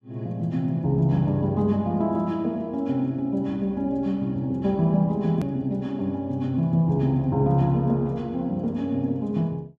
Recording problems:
edit click; at 5.5 s

